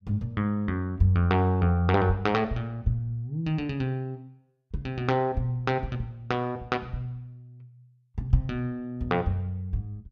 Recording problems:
none

